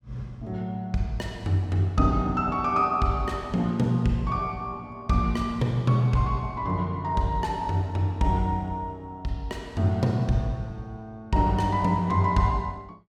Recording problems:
none

